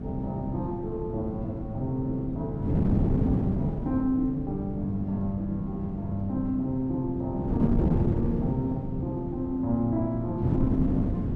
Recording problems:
wind noise; below 250 Hz, SNR 0 dB

